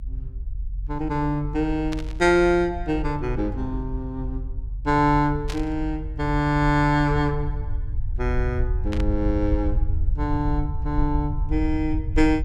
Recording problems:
rumble; below 70 Hz, SNR 6 dB
static burst; at 2 s, at 5.5 s and at 9 s; peak -6 dB vs average level

